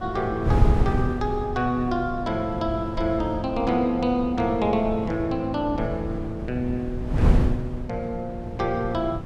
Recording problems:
wind on the microphone; below 150 Hz, SNR 4 dB

